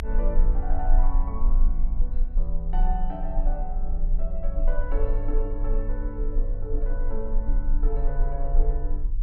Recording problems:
low-frequency rumble; below 32 Hz, strongest tone 26 Hz, SNR -8 dB

